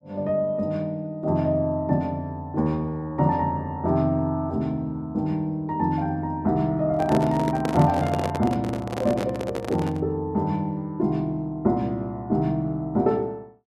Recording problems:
handling noise; from 7 to 10 s; peak +1 dB vs average level

